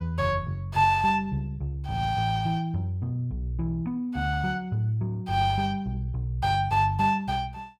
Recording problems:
none

